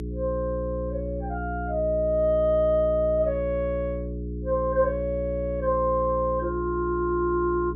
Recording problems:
electrical hum; 60 Hz, harmonics up to 420 Hz, SNR 7 dB

